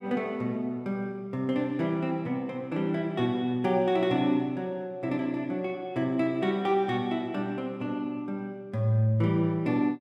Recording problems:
none

